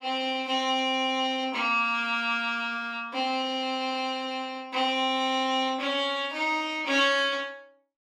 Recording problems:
none

